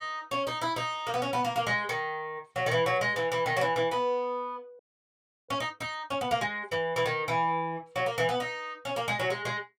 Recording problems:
audio freezing; at 5 s for 0.5 s

